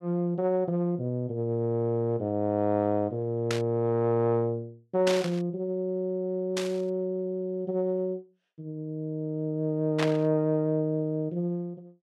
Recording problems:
static burst; 4 times, first at 3.5 s; peak +1 dB vs average level

